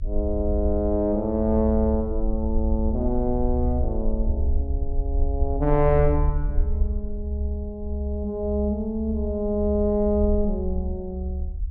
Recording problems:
rumble; below 70 Hz, SNR 3 dB

